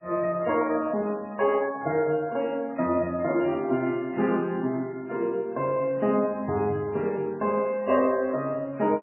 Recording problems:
lossy compression; MP3, log-spectral distance 2 dB, nothing above 2.8 kHz

